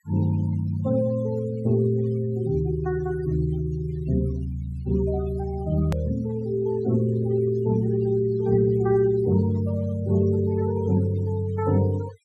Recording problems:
denoising artefacts; signal-to-artefact ratio 19 dB
hard cut with a click; at 6 s

